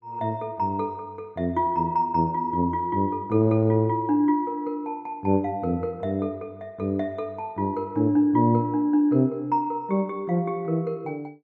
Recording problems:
none

